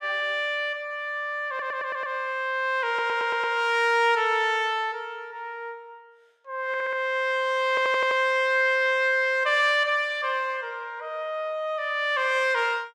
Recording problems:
audio stuttering; 4 times, first at 1.5 s

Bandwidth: 14.5 kHz